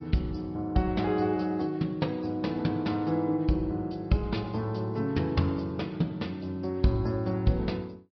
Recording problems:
treble missing; nothing above 5.5 kHz
lossy compression; MP3, log-spectral distance 2 dB

